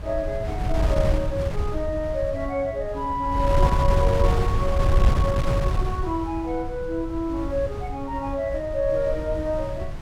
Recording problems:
wind on the microphone; below 110 Hz, SNR 0 dB

